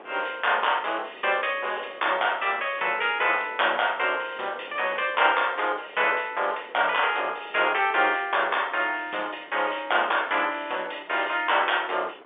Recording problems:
phone line; 320 Hz to 3.5 kHz, G.711
wind on the microphone; below 1.3 kHz, SNR 23 dB

